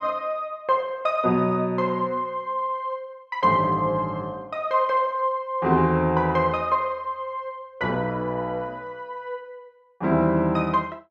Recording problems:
none

